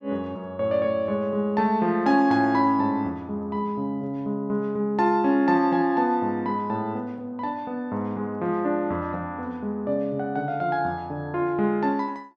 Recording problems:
none

